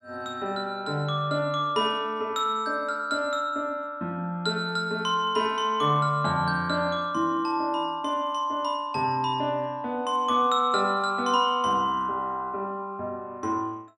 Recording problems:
none

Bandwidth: 12.5 kHz